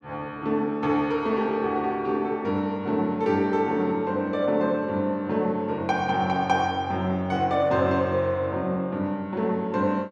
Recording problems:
none

